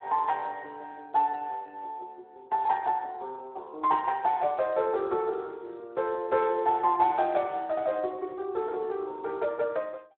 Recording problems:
telephone audio; 300 Hz to 3.2 kHz, Speex

